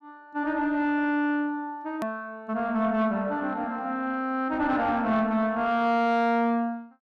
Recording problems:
distortion; soft clipping, signal-to-distortion ratio 10 dB
click at an edit; at 2 s

